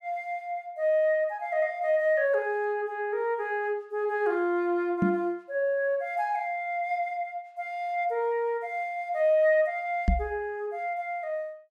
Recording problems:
microphone bump; at 5 s and at 10 s; peak +6 dB vs average level

